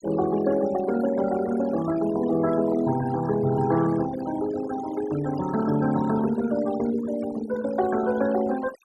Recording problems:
denoising artefacts; signal-to-artefact ratio 13 dB

